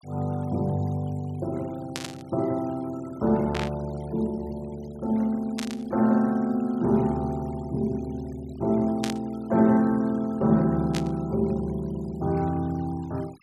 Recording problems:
noise reduction artefacts; signal-to-artefact ratio 25 dB
static burst; 5 times, first at 2 s; peak -2 dB vs average level

